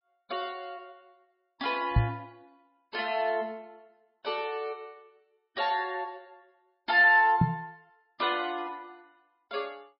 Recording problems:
lossy codec; MP3, log-spectral distance 2 dB, nothing above 4.9 kHz
microphone bump; at 2 s and at 7.5 s; peak +8 dB vs average level

